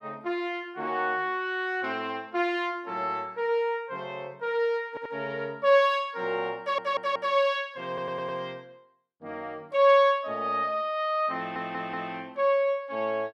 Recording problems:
audio stuttering; 4 times, first at 5 s

